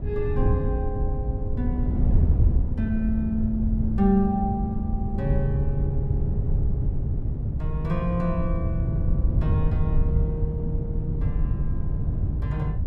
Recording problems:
wind on the microphone; below 110 Hz, SNR -3 dB

